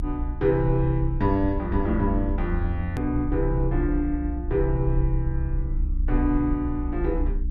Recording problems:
hum; 60 Hz, harmonics up to 300 Hz, SNR 14 dB
rumble; below 64 Hz, strongest tone 34 Hz, SNR 4 dB
edit click; at 3 s

